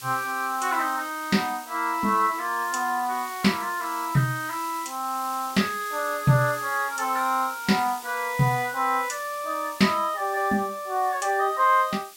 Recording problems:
background hiss; SNR 15 dB

